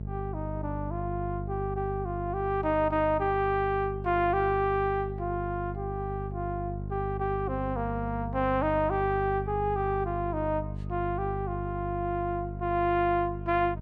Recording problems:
electrical hum; 50 Hz, harmonics up to 450 Hz, SNR 7 dB

